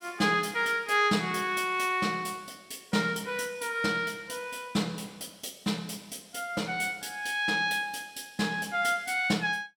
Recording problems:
none

